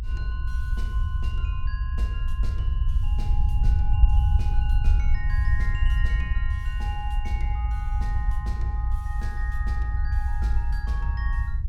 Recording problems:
low-frequency rumble; below 68 Hz, SNR -12 dB

